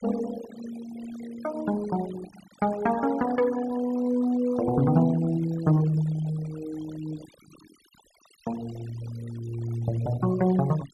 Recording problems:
denoising artefacts; signal-to-artefact ratio 19 dB

